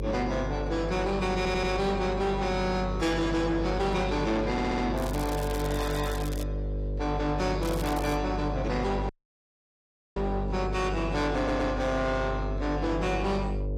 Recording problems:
lossy compression; AAC, log-spectral distance 2 dB, nothing above 15.1 kHz
distortion; soft clipping, signal-to-distortion ratio 10 dB
hum; 50 Hz, harmonics up to 600 Hz, SNR 4 dB
audio stuttering; at 1.5 s, at 4.5 s and at 11 s
crackle; from 5 to 6.5 s and at 7.5 s; loose cable, SNR 14 dB
dropout; at 9 s for 1 s

